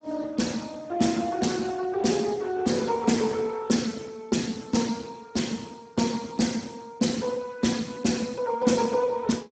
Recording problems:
lossy compression; Speex, log-spectral distance 5 dB, nothing above 7.8 kHz

